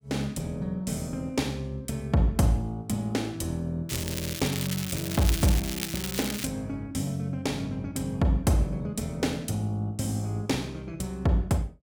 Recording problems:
crackle; from 4 to 6.5 s; loose cable, SNR 5 dB

